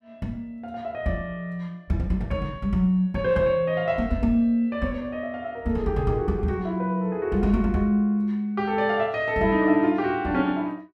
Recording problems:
none

